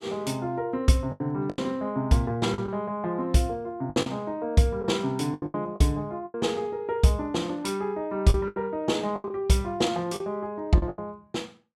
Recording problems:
packet loss; 9% of the sound replaced, filled with the last packet

